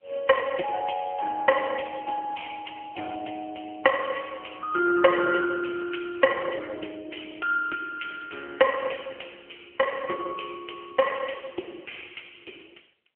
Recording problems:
telephone audio; 320 Hz to 3.2 kHz, AMR-NB

